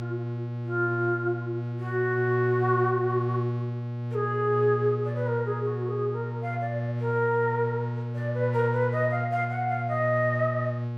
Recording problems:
hum; 60 Hz, harmonics up to 1.1 kHz, SNR 3 dB

